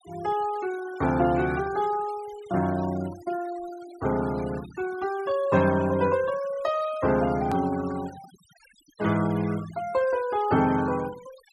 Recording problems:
denoising artefacts; signal-to-artefact ratio 19 dB
hard cut with a click; at 7.5 s

